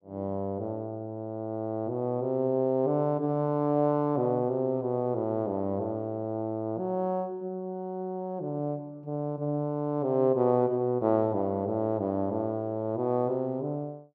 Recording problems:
none

